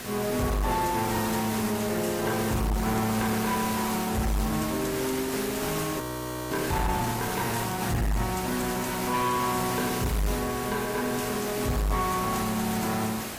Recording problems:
codec artefacts; AAC, log-spectral distance 9 dB, nothing above 15.1 kHz
distorted audio; hard clipping, uneven, signal-to-distortion ratio 10 dB
background hiss; slope -3 dB per octave, SNR 4 dB
frozen audio; at 6 s for 0.5 s

